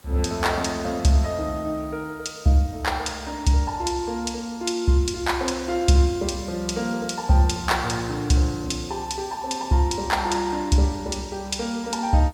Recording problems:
background hiss; slope -3 dB per octave, SNR 28 dB

